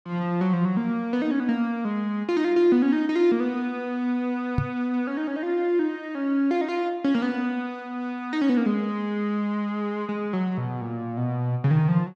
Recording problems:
knock on the microphone; at 4.5 s; peak +4 dB vs average level

